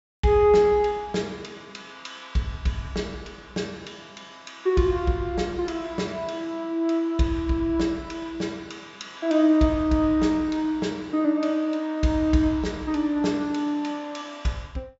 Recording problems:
treble cut off; nothing above 8 kHz

